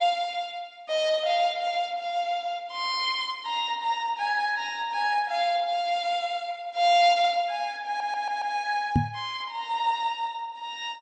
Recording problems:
codec artefacts; MP2, log-spectral distance 3 dB, nothing above 7.3 kHz
stutter; at 8 s
knock on the microphone; at 9 s; peak +7 dB vs average level

